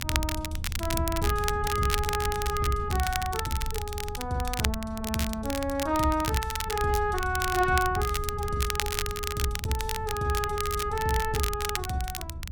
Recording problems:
low-frequency rumble; below 82 Hz, SNR 7 dB
crackle; vinyl, SNR 5 dB

